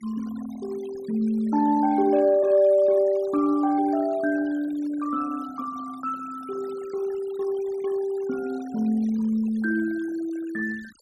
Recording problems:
denoising artefacts; signal-to-artefact ratio 23 dB

